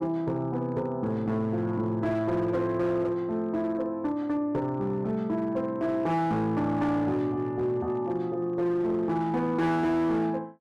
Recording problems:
distortion; hard clipping, signal-to-distortion ratio 11 dB

